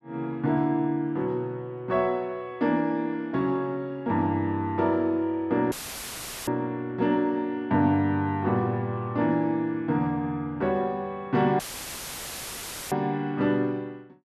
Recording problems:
audio cutting out; at 5.5 s for 1 s and at 12 s for 1.5 s; filled with static

